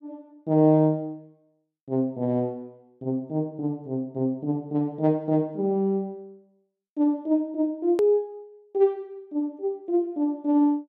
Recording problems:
click at an edit; at 8 s

